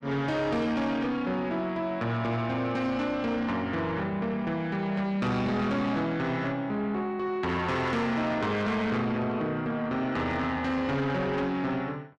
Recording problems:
distorted audio; soft clipping, signal-to-distortion ratio 10 dB

